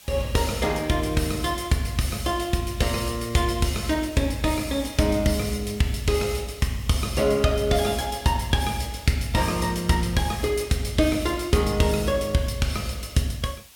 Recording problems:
background hiss; slope +2 dB per octave, SNR 21 dB

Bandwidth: 17 kHz